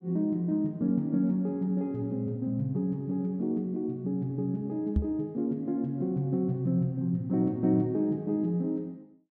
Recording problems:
microphone bump; at 5 s; peak +5 dB vs average level

